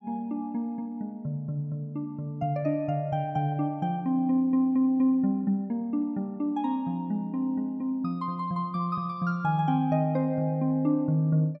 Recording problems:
none

